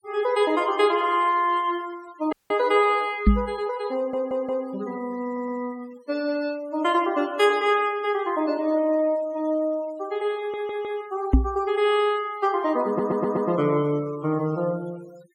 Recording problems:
noise reduction artefacts; signal-to-artefact ratio 24 dB
audio cutting out; at 2.5 s
microphone thump; at 3.5 s and at 11 s; peak +10 dB vs average level
stutter; 4 times, first at 4 s

